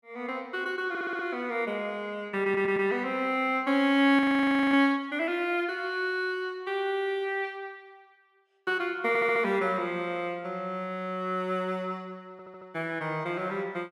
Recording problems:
stutter; 4 times, first at 1 s
audio freezing; at 4 s for 0.5 s

